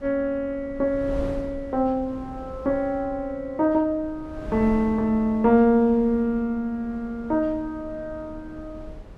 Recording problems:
wind on the microphone; below 290 Hz, SNR 17 dB

